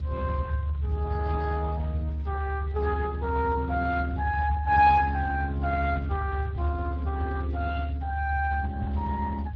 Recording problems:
lossy compression; Speex, log-spectral distance 2 dB
low-frequency rumble; below 78 Hz, strongest tone 72 Hz, SNR 3 dB

